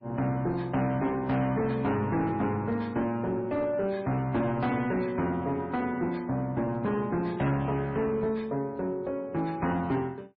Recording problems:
lossy compression; MP3, log-spectral distance 2 dB, nothing above 4.4 kHz
distortion; soft clipping, signal-to-distortion ratio 10 dB

